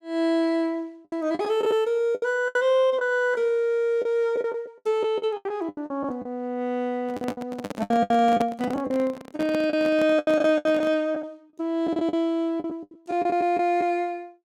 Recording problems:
packet loss; 12% of the sound replaced, filled with the last packet
handling noise; from 7 to 11 s; peak -2 dB vs average level

